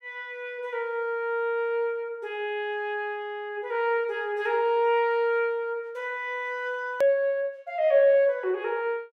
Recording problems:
edit click; at 7 s

